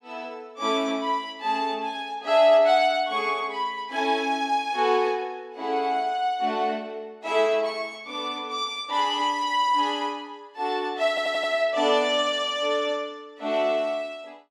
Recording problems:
audio stuttering; at 11 s

